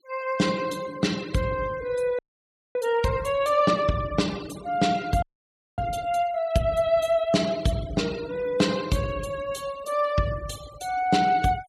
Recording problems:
noise reduction artefacts; signal-to-artefact ratio 17 dB
audio freezing; at 2 s for 0.5 s and at 5 s for 0.5 s

